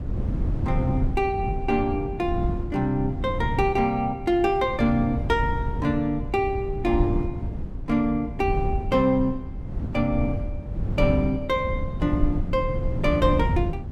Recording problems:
wind noise; below 130 Hz, SNR 5 dB

